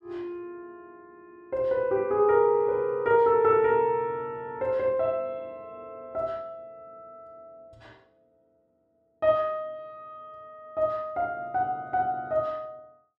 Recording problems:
none

